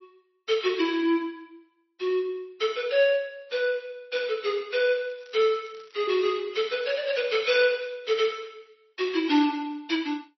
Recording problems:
lossy codec; MP3, log-spectral distance 4 dB, nothing above 5.8 kHz
crackle; from 5 to 8 s; loose cable, SNR 29 dB

